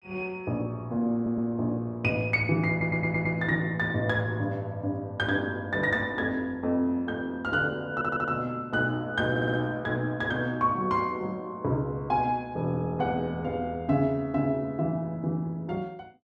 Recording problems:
audio stuttering; 4 times, first at 1 s

